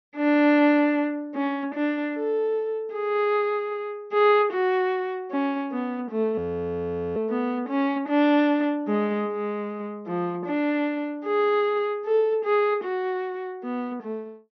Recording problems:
treble missing; nothing above 6.2 kHz
frozen audio; at 6.5 s for 1 s

